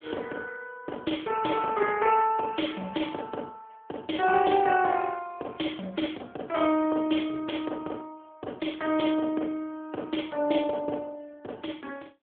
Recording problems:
telephone audio; 260 Hz to 3.4 kHz, AMR-NB

